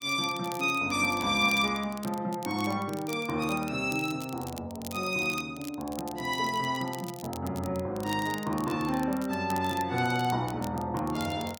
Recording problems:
crackle; vinyl, SNR 16 dB

